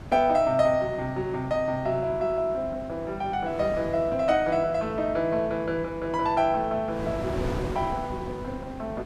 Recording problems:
electrical hum; 50 Hz, harmonics up to 1.1 kHz, SNR 19 dB
wind on the microphone; below 610 Hz, SNR 13 dB

